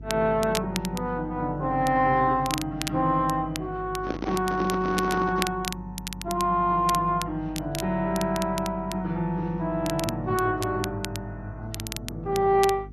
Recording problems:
codec artefacts; MP2, then AAC, log-spectral distance 2 dB
hum; 50 Hz, harmonics up to 450 Hz, SNR 16 dB
crackling; vinyl, SNR 11 dB
handling noise; from 4 to 5.5 s; peak -1 dB vs average level

